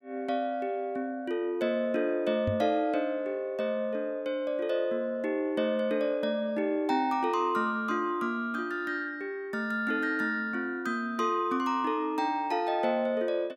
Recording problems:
microphone bump; at 2.5 s; peak +2 dB vs average level

